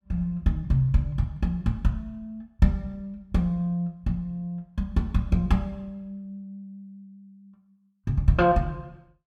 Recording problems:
none

